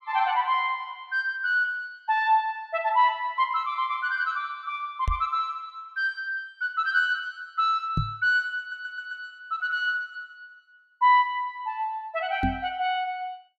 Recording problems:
microphone bump; at 5 s, at 8 s and at 12 s; peak +3 dB vs average level
audio stuttering; at 8.5 s

